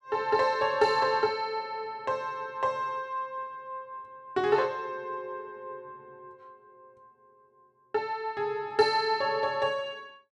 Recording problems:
none

